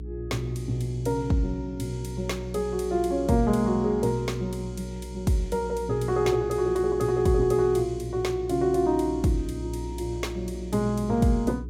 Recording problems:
mains hum; 60 Hz, harmonics up to 420 Hz, SNR 13 dB

